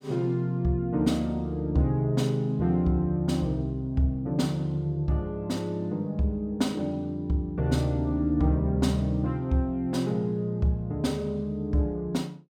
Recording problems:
none

